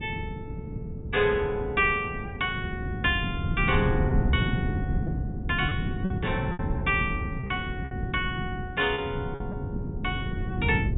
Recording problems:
treble missing; nothing above 4 kHz
wind on the microphone; below 190 Hz, SNR 2 dB
lost packets; 4% of the sound replaced, filled with repeated pitch periods

